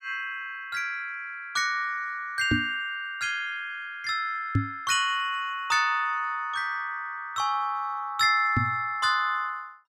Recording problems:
knock on the microphone; at 2.5 s, at 4.5 s and at 8.5 s; peak +7 dB vs average level

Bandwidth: 15 kHz